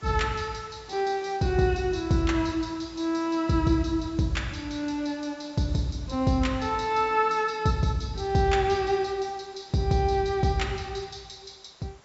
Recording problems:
treble missing; nothing above 8 kHz
background hiss; SNR 27 dB

